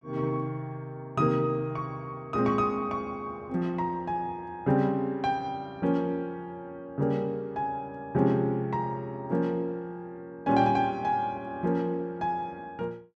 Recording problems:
none

